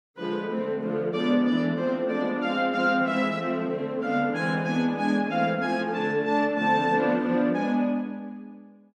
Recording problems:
none

